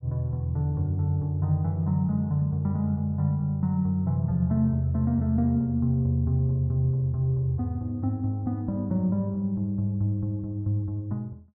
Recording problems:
none

